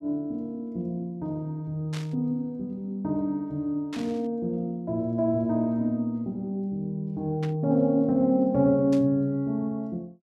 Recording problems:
static burst; 4 times, first at 2 s; peak -9 dB vs average level

